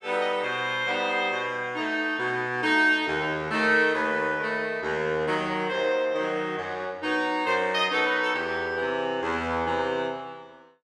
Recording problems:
none

